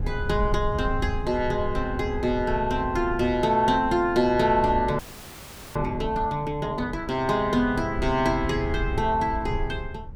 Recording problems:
wind on the microphone; below 98 Hz, SNR 10 dB
frozen audio; at 5 s for 1 s

